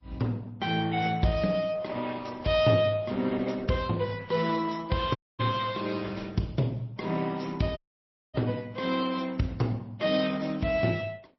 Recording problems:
lossy codec; Opus, then MP3, log-spectral distance 4 dB, nothing above 5.7 kHz
audio cutting out; at 5 s and at 8 s for 0.5 s

